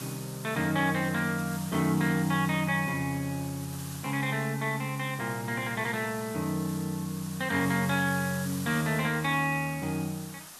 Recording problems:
background hiss; SNR 13 dB

